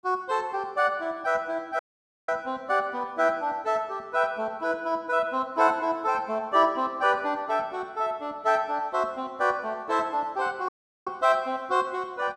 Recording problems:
audio cutting out; at 2 s and at 11 s

